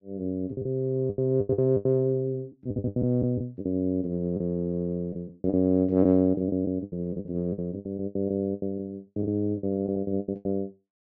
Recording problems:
lost packets; 16% of the sound replaced, filled with the last packet

